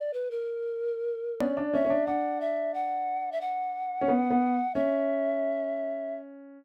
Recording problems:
click at an edit; at 1.5 s

